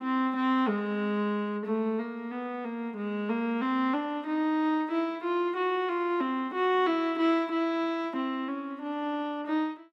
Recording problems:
none

